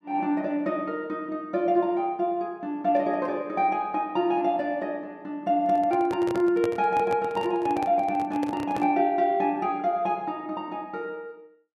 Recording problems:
handling noise; from 5.5 to 9 s; peak -2 dB vs average level

